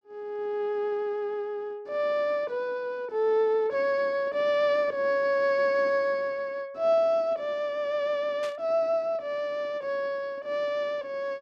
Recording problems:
static burst; at 8.5 s; peak -10 dB vs average level

